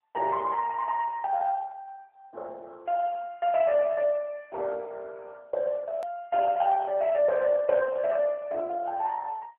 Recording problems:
telephone audio; 340 Hz to 2.8 kHz, AMR-NB
click at an edit; at 6 s

